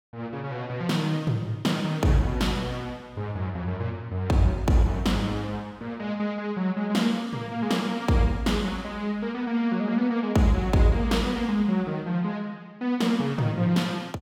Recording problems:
none

